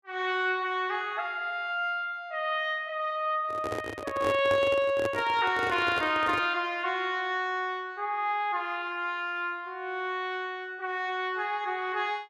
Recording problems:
handling noise; from 3.5 to 6.5 s; peak -1 dB vs average level

